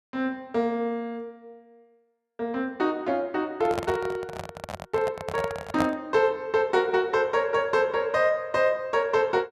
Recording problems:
handling noise; from 3.5 to 6 s; peak +1 dB vs average level

